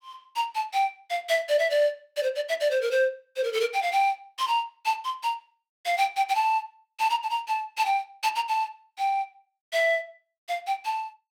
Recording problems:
none

